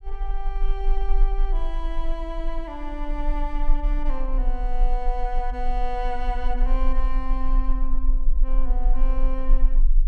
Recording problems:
low-frequency rumble; below 32 Hz, strongest tone 24 Hz, SNR -6 dB

